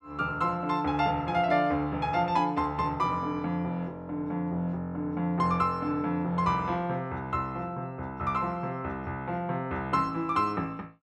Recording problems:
none

